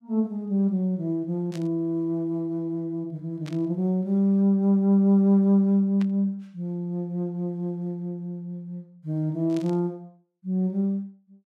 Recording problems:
static burst; 4 times, first at 1.5 s; peak -13 dB vs average level

